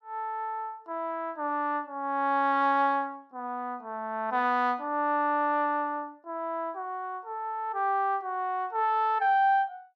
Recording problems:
none

